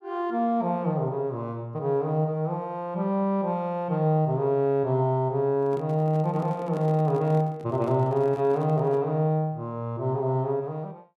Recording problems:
microphone handling noise; from 5.5 to 9 s; peak -10 dB vs average level

